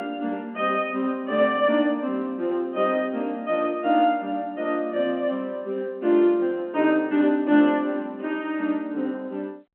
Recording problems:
telephone audio; 190 Hz to 3.2 kHz, G.711

